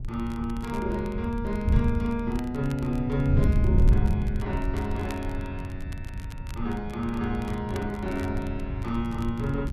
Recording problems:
wind on the microphone; below 110 Hz, SNR 0 dB
crackle; vinyl, SNR 21 dB

